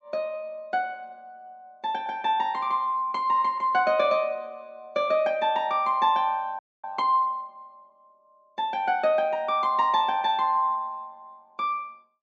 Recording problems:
treble missing; nothing above 8 kHz
audio freezing; at 6.5 s

